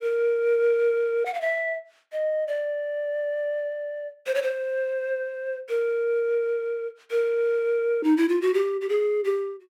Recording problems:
none

